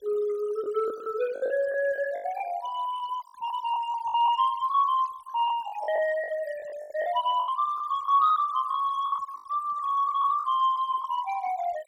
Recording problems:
noise reduction artefacts; signal-to-artefact ratio 20 dB
lost packets; 12% of the sound replaced, filled with the last packet

